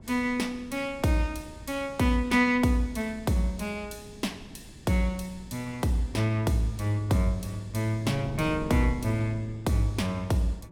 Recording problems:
wind noise; below 270 Hz, SNR 17 dB

